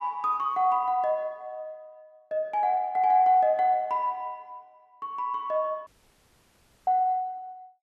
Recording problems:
dropout; at 6 s for 1 s

